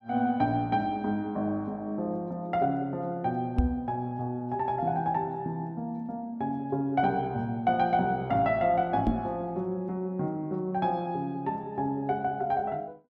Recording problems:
knock on the microphone; at 3.5 s and at 9 s; peak +7 dB vs average level

